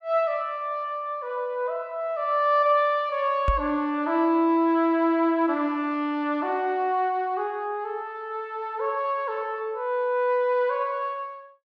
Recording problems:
microphone thump; at 3.5 s; peak +3 dB vs average level

